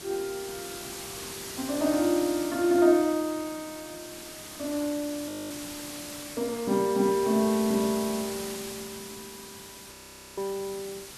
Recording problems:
hiss; SNR 11 dB
frozen audio; at 5.5 s and at 10 s

